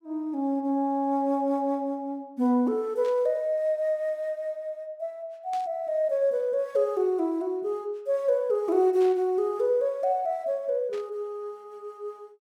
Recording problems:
burst of static; 4 times, first at 3 s; peak -14 dB vs average level

